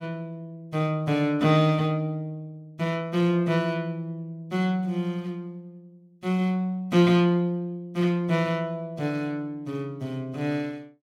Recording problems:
none

